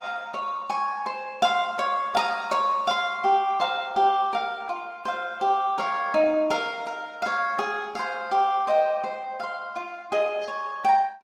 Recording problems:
lossy compression; Opus, log-spectral distance 3 dB, nothing above 20.1 kHz

